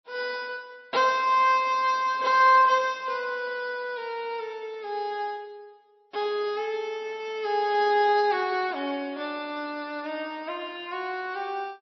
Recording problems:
codec artefacts; MP3, log-spectral distance 2 dB, nothing above 5.2 kHz

